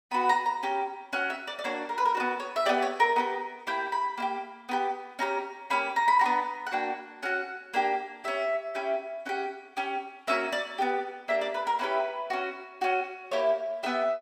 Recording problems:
none

